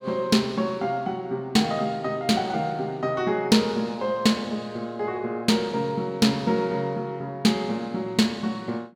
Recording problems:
none

